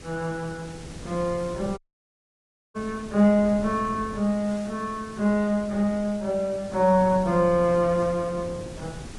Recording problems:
lossy codec; Vorbis, log-spectral distance 3 dB
background hiss; slope -3 dB per octave, SNR 21 dB
wind on the microphone; below 320 Hz, SNR 19 dB
audio cutting out; at 2 s for 1 s

